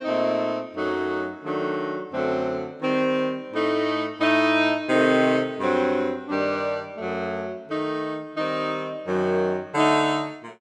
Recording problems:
none

